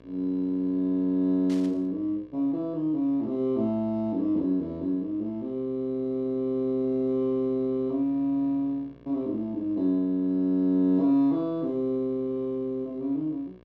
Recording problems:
electrical hum; 60 Hz, harmonics up to 2.9 kHz, SNR 27 dB
static burst; at 1.5 s; peak -14 dB vs average level

